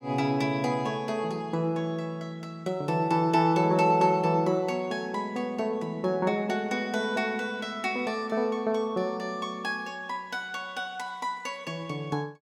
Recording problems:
none

